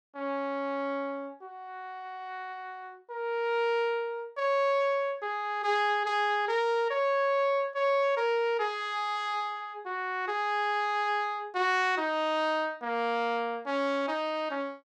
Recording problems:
none

